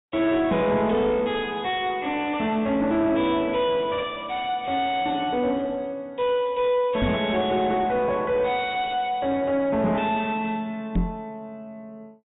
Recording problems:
treble cut off; nothing above 4 kHz
distorted audio; soft clipping, signal-to-distortion ratio 9 dB
microphone bump; at 7 s and at 11 s; peak +5 dB vs average level

